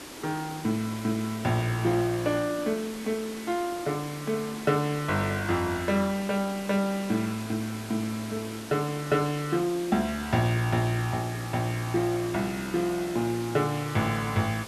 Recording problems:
hiss; SNR 12 dB

